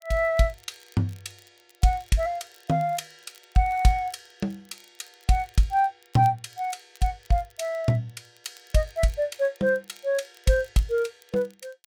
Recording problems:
crackling; vinyl, SNR 29 dB

